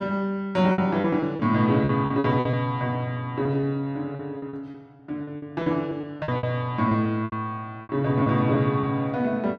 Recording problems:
lost packets; 12% of the sound replaced, filled with repeated pitch periods

